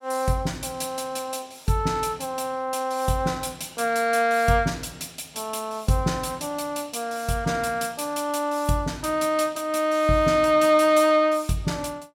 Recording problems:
none

